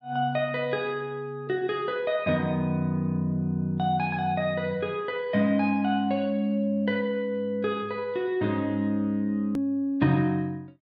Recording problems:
edit click; at 9.5 s

